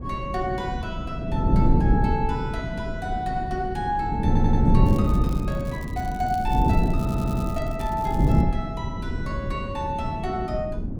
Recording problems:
wind noise; below 210 Hz, SNR -4 dB
audio stuttering; at 4.5 s and at 7 s
crackle; from 5 to 8.5 s; loose cable, SNR 18 dB

